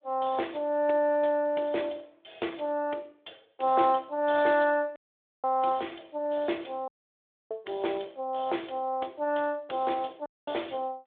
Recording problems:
telephone audio; 300 Hz to 3.6 kHz, Speex
dropout; at 5 s, at 7 s for 0.5 s and at 10 s

